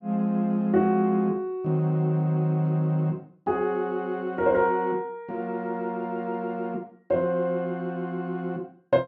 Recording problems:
none

